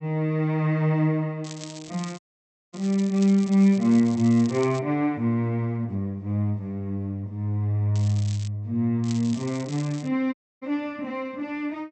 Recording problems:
low-pass filter; nothing above 8 kHz
crackling; from 1.5 to 5 s, at 8 s and from 9 to 10 s; loose cable, SNR 19 dB
audio cutting out; at 2 s for 0.5 s and at 10 s

